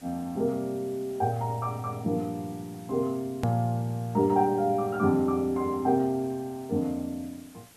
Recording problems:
hiss; slope -2 dB per octave, SNR 25 dB
click at an edit; at 3.5 s

